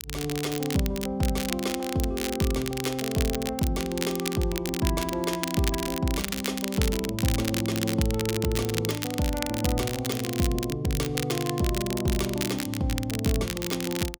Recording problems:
crackle; vinyl, SNR 5 dB

